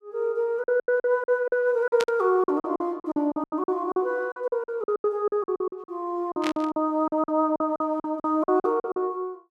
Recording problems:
packet loss; 18% of the sound replaced, filled with silence
burst of static; at 2 s and at 6.5 s; peak -1 dB vs average level

